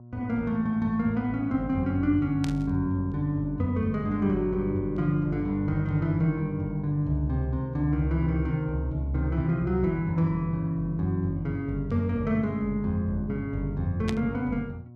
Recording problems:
hum; 60 Hz, harmonics up to 720 Hz, SNR 19 dB
static burst; at 2.5 s and at 14 s; peak -4 dB vs average level

